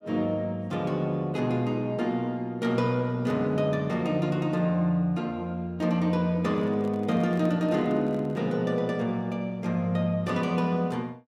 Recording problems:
microphone handling noise; from 6.5 to 8.5 s; peak -10 dB vs average level

